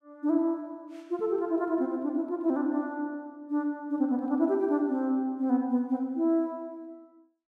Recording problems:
none

